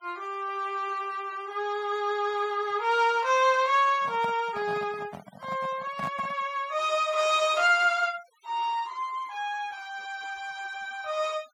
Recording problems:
noise reduction artefacts; signal-to-artefact ratio 23 dB
microphone handling noise; from 4 to 6.5 s; peak -7 dB vs average level

